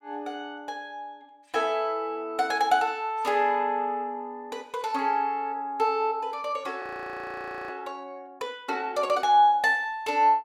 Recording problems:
frozen audio; at 7 s for 1 s

